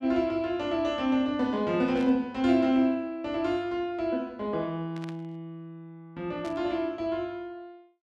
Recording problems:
static burst; at 2 s, at 5 s and at 6.5 s; peak -13 dB vs average level

